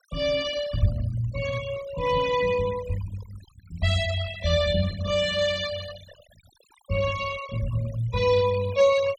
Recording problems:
noise reduction artefacts; signal-to-artefact ratio 17 dB

